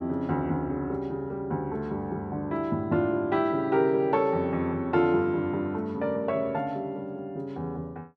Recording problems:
none

